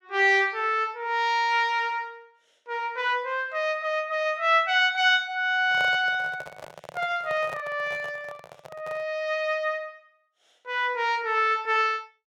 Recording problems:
handling noise; from 5.5 to 9 s; peak -9 dB vs average level

